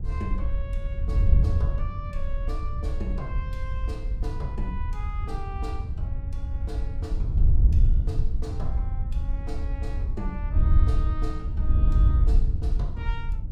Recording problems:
wind on the microphone; below 76 Hz, SNR -13 dB

